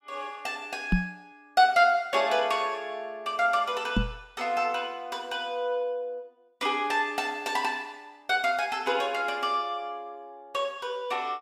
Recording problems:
microphone thump; at 1 s and at 4 s; peak +7 dB vs average level

